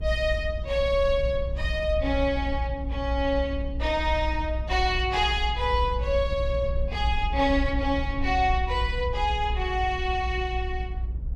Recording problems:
rumble; below 62 Hz, strongest tone 58 Hz, SNR 4 dB

